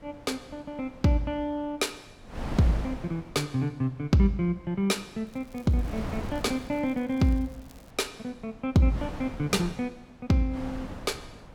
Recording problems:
wind on the microphone; below 570 Hz, SNR 13 dB
crackle; from 5.5 to 8 s; loose cable, SNR 29 dB

